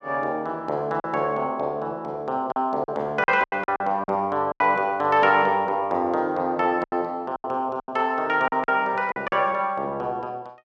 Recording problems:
lost packets; 8% of the sound replaced, filled with silence

